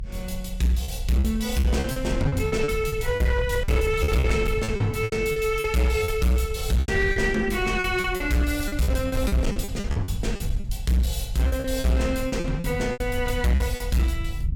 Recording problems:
distorted audio; hard clipping, signal-to-distortion ratio 11 dB
rumble; below 86 Hz, SNR 8 dB
packet loss; 13% of the sound replaced, filled with repeated pitch periods

